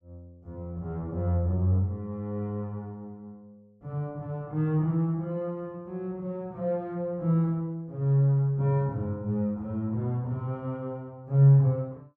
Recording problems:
none

